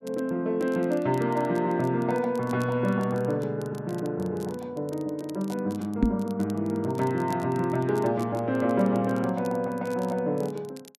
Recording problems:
crackle; vinyl, SNR 25 dB
knock on the microphone; at 6 s; peak +9 dB vs average level

